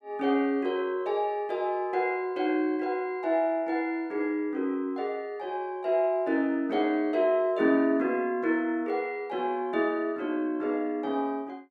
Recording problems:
none

